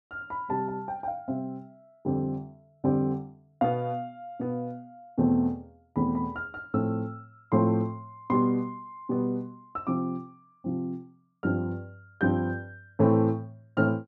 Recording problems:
none

